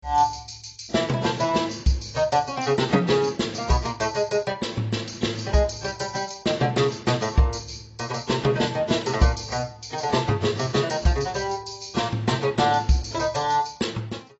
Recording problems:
codec artefacts; AAC, log-spectral distance 6 dB, nothing above 7.3 kHz

